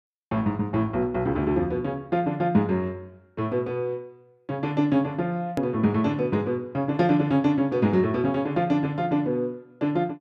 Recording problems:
hard cut with a click; at 5.5 s

